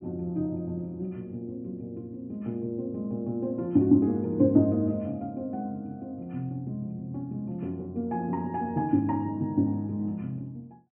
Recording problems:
low-pass filter; nothing above 3.1 kHz

